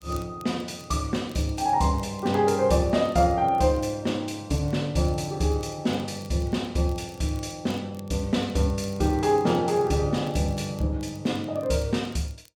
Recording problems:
crackling; vinyl, SNR 29 dB

